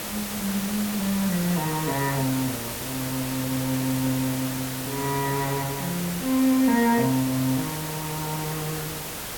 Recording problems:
background hiss; slope -2 dB per octave, SNR 5 dB

